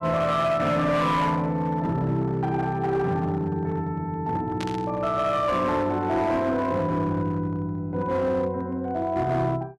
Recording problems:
distortion; hard clipping, uneven, signal-to-distortion ratio 12 dB
burst of static; at 4.5 s; peak -6 dB vs average level

